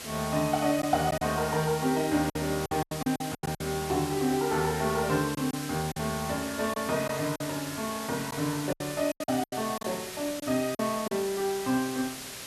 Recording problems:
background hiss; slope -1 dB per octave, SNR 9 dB
packet loss; 8% of the sound replaced, filled with silence

